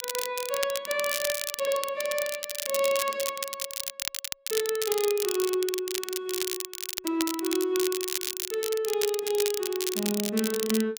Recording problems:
crackle; vinyl, SNR 3 dB

